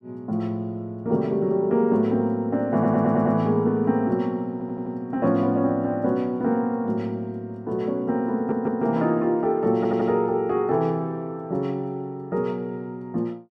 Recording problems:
stutter; 4 times, first at 2.5 s

